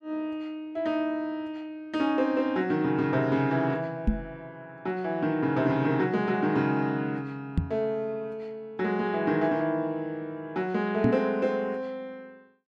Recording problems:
knock on the microphone; at 4 s, at 7.5 s and at 11 s; peak +7 dB vs average level

